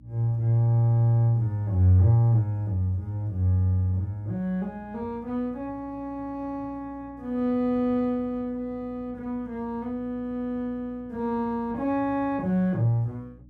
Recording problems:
electrical hum; 60 Hz, harmonics up to 300 Hz, SNR 25 dB

